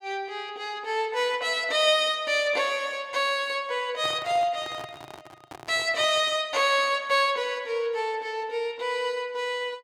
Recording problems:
microphone handling noise; from 4 to 6.5 s; peak -9 dB vs average level

